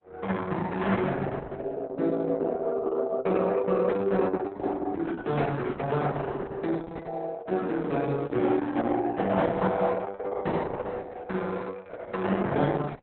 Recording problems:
codec artefacts; Opus, log-spectral distance 3 dB, nothing above 3.9 kHz

